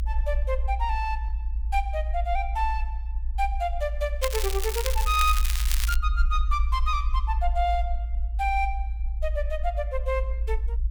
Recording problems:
low-frequency rumble; below 56 Hz, SNR 0 dB
crackle; from 4 to 6 s; loose cable, SNR 3 dB

